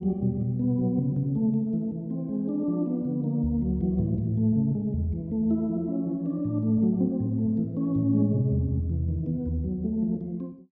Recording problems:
none

